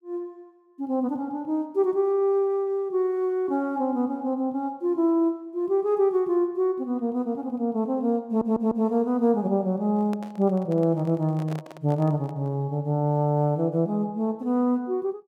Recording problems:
audio stuttering; at 8.5 s
microphone handling noise; from 10 to 13 s; peak -9 dB vs average level

